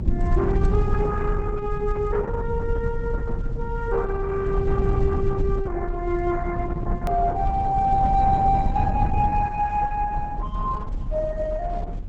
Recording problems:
codec artefacts; Opus, log-spectral distance 3 dB
rumble; below 110 Hz, SNR 2 dB
click at an edit; at 7 s

